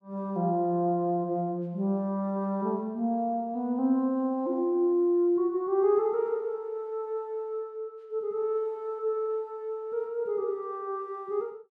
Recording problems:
none

